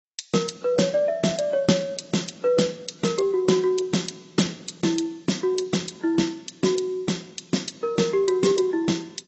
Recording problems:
lossy codec; AAC, log-spectral distance 6 dB, nothing above 7.8 kHz

